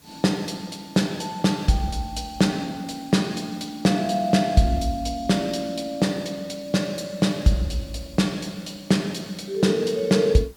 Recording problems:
background hiss; slope -3 dB per octave, SNR 27 dB

